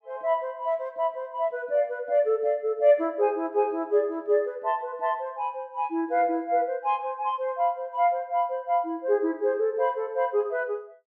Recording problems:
none

